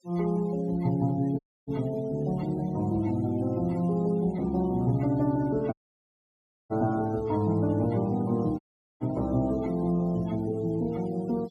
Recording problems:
noise reduction artefacts; signal-to-artefact ratio 24 dB
audio cutting out; at 1.5 s, at 5.5 s for 1 s and at 8.5 s

